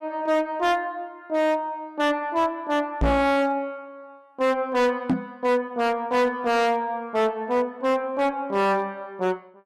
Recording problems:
distortion; hard clipping, signal-to-distortion ratio 7 dB
microphone thump; at 3 s and at 5 s; peak +5 dB vs average level

